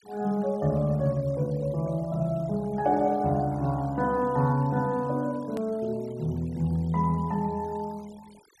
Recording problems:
noise reduction artefacts; signal-to-artefact ratio 27 dB
click at an edit; at 5.5 s

